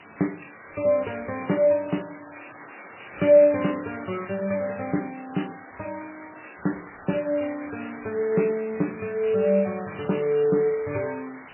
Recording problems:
lossy compression; MP3, log-spectral distance 22 dB, nothing above 2.7 kHz
hiss; SNR 19 dB

